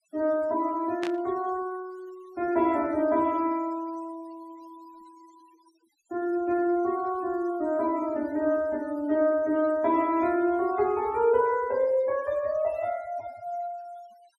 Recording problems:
noise reduction artefacts; signal-to-artefact ratio 23 dB
static burst; at 1 s; peak -5 dB vs average level

